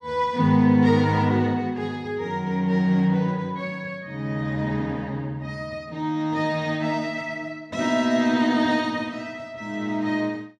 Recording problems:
none

